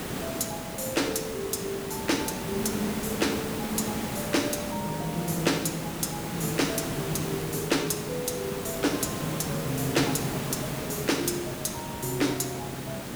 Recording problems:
hiss; slope -5 dB per octave, SNR 4 dB
crackling; vinyl, SNR 29 dB

